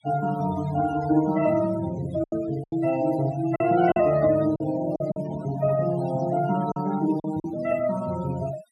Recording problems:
denoising artefacts; signal-to-artefact ratio 15 dB
lost packets; 6% of the sound replaced, filled with silence

